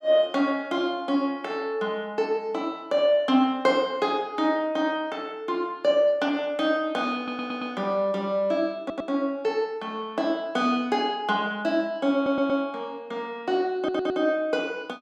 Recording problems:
stutter; 4 times, first at 7 s

